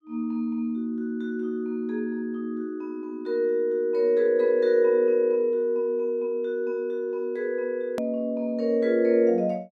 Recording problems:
click at an edit; at 8 s

